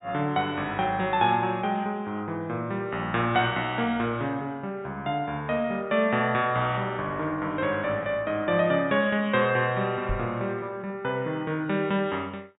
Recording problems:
low-pass filter; nothing above 4 kHz
knock on the microphone; at 10 s; peak -1 dB vs average level

